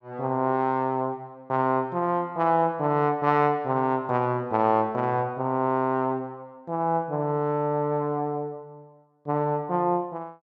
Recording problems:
none

